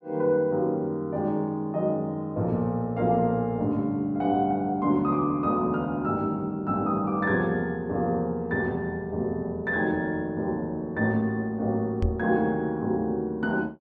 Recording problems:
knock on the microphone; at 12 s; peak +3 dB vs average level

